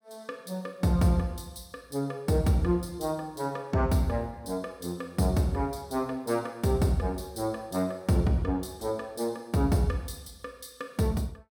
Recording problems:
none

